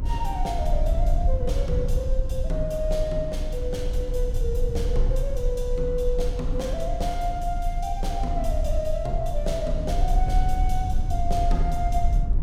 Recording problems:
low-frequency rumble; below 54 Hz, strongest tone 28 Hz, SNR -2 dB

